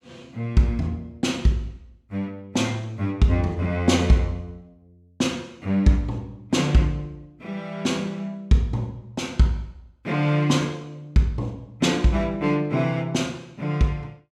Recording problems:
none

